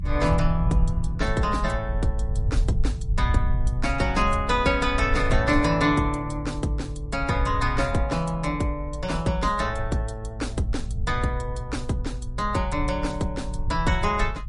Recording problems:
codec artefacts; MP3, log-spectral distance 2 dB, nothing above 10.4 kHz
rumble; below 72 Hz, SNR 5 dB

